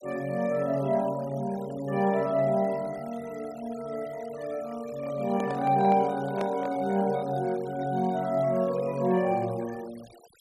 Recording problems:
noise reduction artefacts; signal-to-artefact ratio 21 dB
handling noise; from 5 to 7 s; peak -3 dB vs average level

